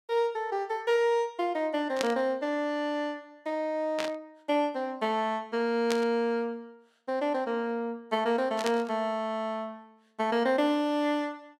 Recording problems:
static burst; 4 times, first at 2 s; peak +1 dB vs average level

